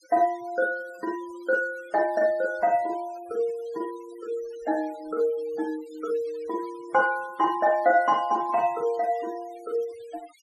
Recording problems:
denoising artefacts; signal-to-artefact ratio 23 dB

